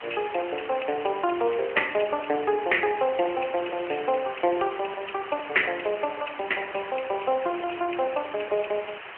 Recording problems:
telephone audio; 300 Hz to 3.1 kHz, AMR-NB
background hiss; SNR 11 dB

